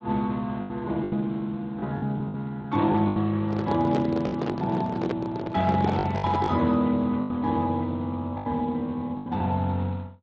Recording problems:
lossy codec; Speex, log-spectral distance 3 dB
packet loss; 9% of the sound replaced, filled with the last packet
microphone handling noise; from 3.5 to 6.5 s; peak +2 dB vs average level

